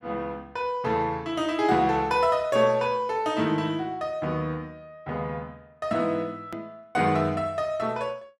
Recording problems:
edit click; at 6.5 s

